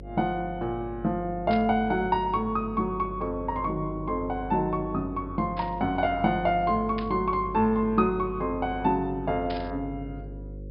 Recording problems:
treble cut off; nothing above 5.5 kHz
hum; 50 Hz, harmonics up to 550 Hz, SNR 13 dB
static burst; 4 times, first at 1.5 s; peak -8 dB vs average level

